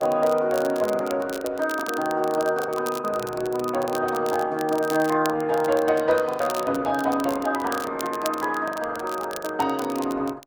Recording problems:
lossy codec; Opus, log-spectral distance 2 dB
crackling; vinyl, SNR 16 dB
packet loss; 8% of the sound replaced, filled with the last packet

